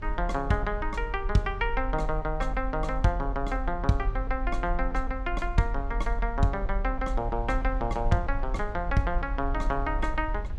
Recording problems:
low-frequency rumble; below 46 Hz, strongest tone 38 Hz, SNR 4 dB

